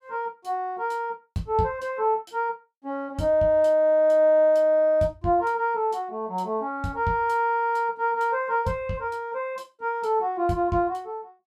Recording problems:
none

